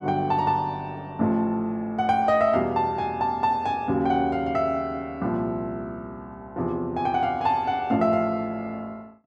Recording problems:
none

